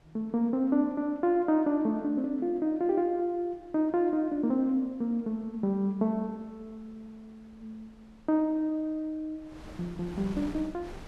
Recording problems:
wind noise; below 700 Hz, SNR 24 dB

